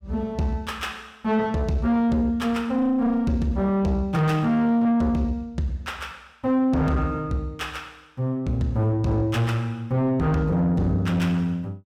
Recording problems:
distortion; soft clipping, signal-to-distortion ratio 9 dB

